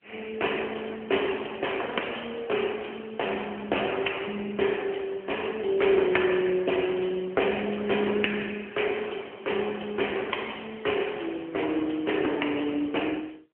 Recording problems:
telephone audio; 260 Hz to 3.2 kHz, AMR-NB

